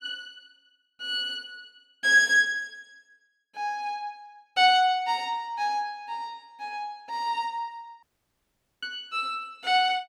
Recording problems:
audio cutting out; at 8 s for 1 s

